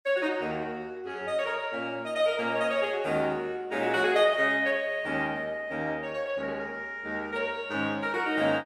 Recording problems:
none

